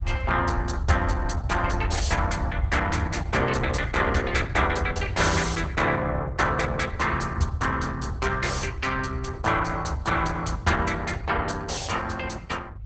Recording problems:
codec artefacts; Opus, log-spectral distance 3 dB, nothing above 7.8 kHz
low-frequency rumble; below 94 Hz, SNR 7 dB

